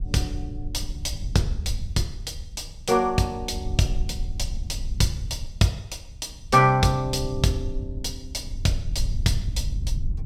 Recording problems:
low-frequency rumble; below 76 Hz, SNR 7 dB

